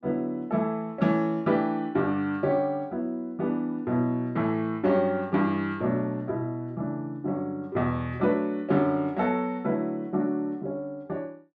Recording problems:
none

